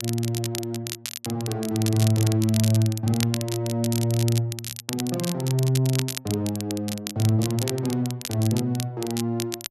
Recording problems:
crackling; vinyl, SNR 8 dB

